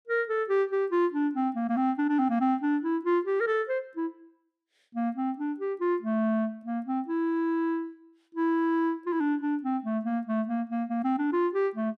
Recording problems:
none

